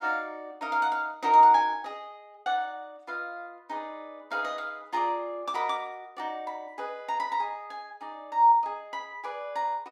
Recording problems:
none

